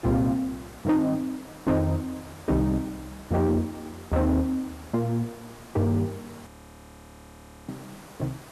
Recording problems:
distorted audio; soft clipping, signal-to-distortion ratio 11 dB
background hiss; slope -5 dB per octave, SNR 19 dB
frozen audio; at 6.5 s for 1 s

